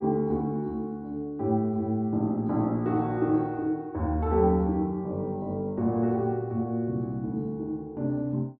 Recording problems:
none

